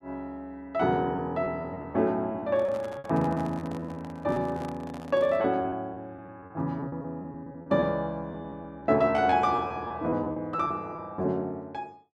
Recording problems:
packet loss; 10% of the sound replaced, filled with repeated pitch periods
microphone handling noise; from 2.5 to 5.5 s; peak -10 dB vs average level

